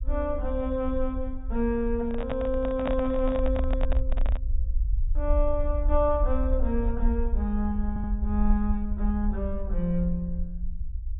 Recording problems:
treble cut off; nothing above 4 kHz
low-frequency rumble; below 56 Hz, SNR 2 dB
handling noise; from 2 to 4.5 s; peak +2 dB vs average level
audio stuttering; at 8 s

